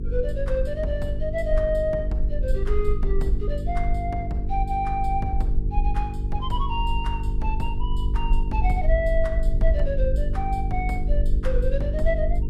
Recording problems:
hum; 50 Hz, harmonics up to 450 Hz, SNR 3 dB
low-frequency rumble; below 48 Hz, SNR 0 dB

